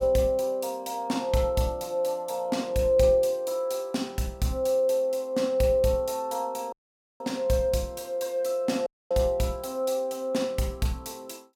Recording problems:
dropout; at 6.5 s and at 9 s

